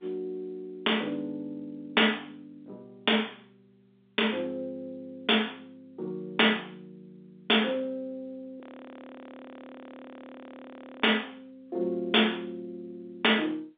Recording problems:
phone line; 280 Hz to 3.7 kHz, G.711
frozen audio; at 8.5 s for 2.5 s

